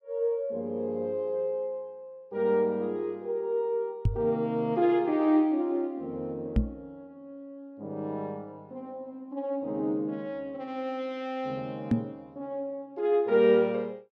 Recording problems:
microphone bump; at 4 s, at 6.5 s and at 12 s; peak +8 dB vs average level

